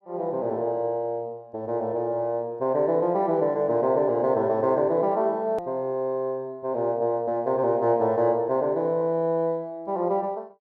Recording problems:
click at an edit; at 5.5 s

